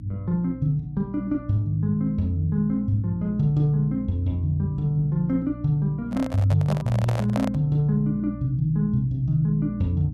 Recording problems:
electrical hum; 60 Hz, harmonics up to 300 Hz, SNR 13 dB
microphone handling noise; from 6 to 7.5 s; peak -2 dB vs average level

